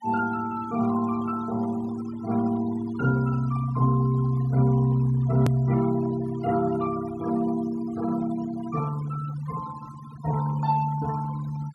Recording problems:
denoising artefacts; signal-to-artefact ratio 17 dB
edit click; at 5.5 s

